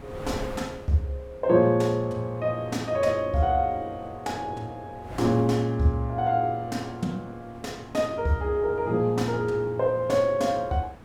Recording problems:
wind on the microphone; below 760 Hz, SNR 19 dB

